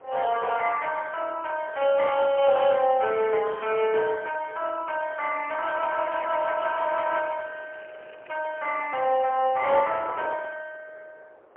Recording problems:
telephone audio; 340 Hz to 3 kHz, AMR-NB, then MP3
wind on the microphone; below 840 Hz, SNR 21 dB
crackle; from 6.5 to 9.5 s; loose cable, SNR 27 dB

